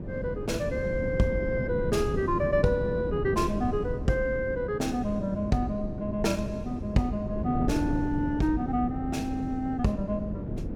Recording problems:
wind on the microphone; below 270 Hz, SNR 5 dB

